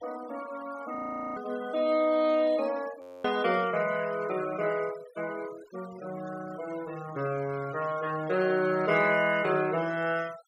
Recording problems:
denoising artefacts; signal-to-artefact ratio 20 dB
frozen audio; at 1 s and at 3 s

